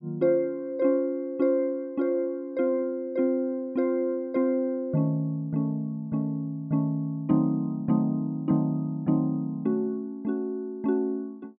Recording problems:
treble cut off; nothing above 5.5 kHz

